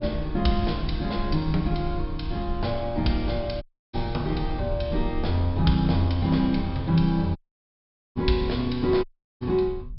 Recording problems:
low-pass filter; nothing above 5.3 kHz
rumble; below 70 Hz, SNR 9 dB
dropout; at 3.5 s, at 7.5 s for 1 s and at 9 s

